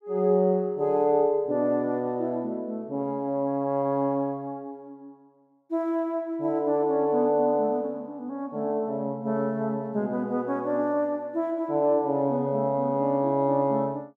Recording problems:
none

